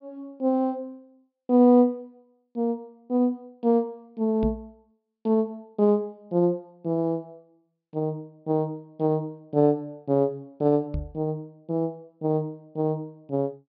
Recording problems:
treble missing; nothing above 5.5 kHz
microphone bump; at 4.5 s and at 11 s; peak 0 dB vs average level

